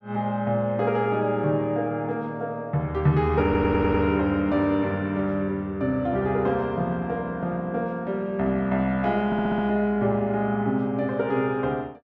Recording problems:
stutter; at 3.5 s and at 9.5 s

